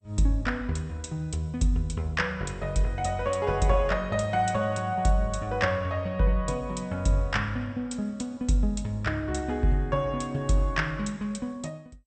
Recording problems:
lossy compression; MP2, log-spectral distance 2 dB, nothing above 8.5 kHz

